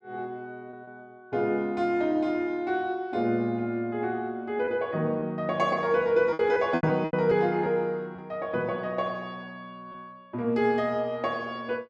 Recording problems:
packet loss; 4% of the sound replaced, filled with repeated pitch periods

